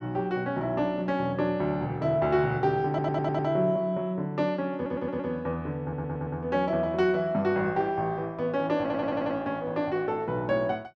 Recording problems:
audio stuttering; 4 times, first at 3 s

